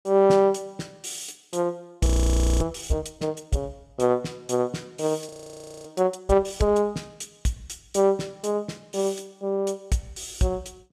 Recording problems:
frozen audio; at 2 s for 0.5 s and at 5.5 s for 0.5 s

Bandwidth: 14.5 kHz